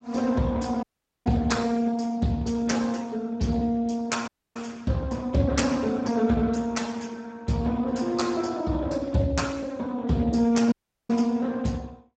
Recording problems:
lossy codec; Speex, log-spectral distance 4 dB, nothing above 7.8 kHz
dropout; at 1 s, at 4.5 s and at 11 s

